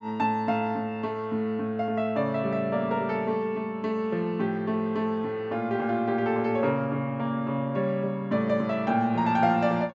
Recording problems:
treble missing; nothing above 8 kHz

